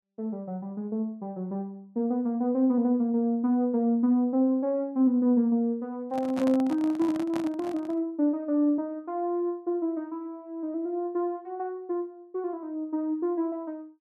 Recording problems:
handling noise; from 6 to 8 s; peak -4 dB vs average level

